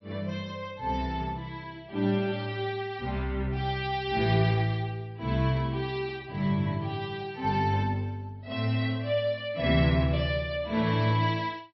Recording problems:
lossy codec; MP3, log-spectral distance 2 dB, nothing above 5 kHz

